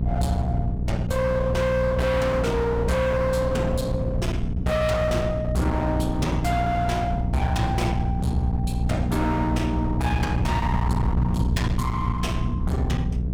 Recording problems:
distorted audio; hard clipping, uneven, signal-to-distortion ratio 6 dB
mains hum; 60 Hz, harmonics up to 480 Hz, SNR 2 dB
wind noise; below 250 Hz, SNR 4 dB

